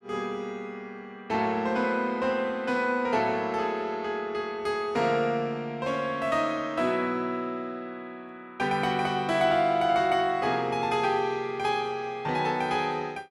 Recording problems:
none

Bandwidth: 14.5 kHz